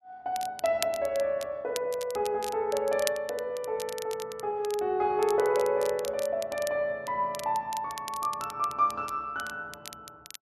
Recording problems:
crackling; vinyl, SNR 13 dB

